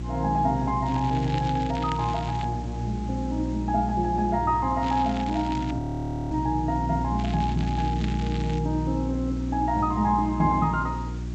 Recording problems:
lossy codec; G.722, log-spectral distance 4 dB
hum; 60 Hz, harmonics up to 360 Hz, SNR 5 dB
hiss; slope -3 dB per octave, SNR 22 dB
crackling; from 1 to 2.5 s, at 5 s and from 7 to 8.5 s; loose cable, SNR 16 dB
frozen audio; at 6 s for 0.5 s

